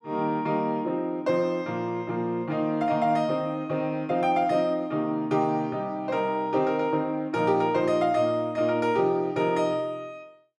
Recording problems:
none

